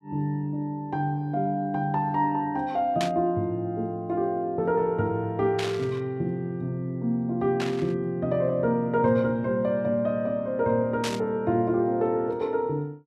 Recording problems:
burst of static; 4 times, first at 3 s; peak -1 dB vs average level

